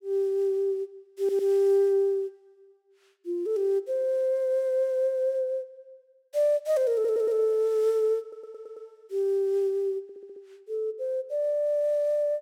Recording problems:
audio stuttering; 4 times, first at 1 s

